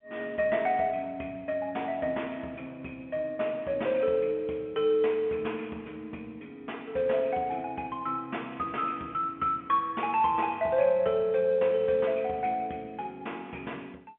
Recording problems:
phone line; 260 Hz to 3.3 kHz, G.711

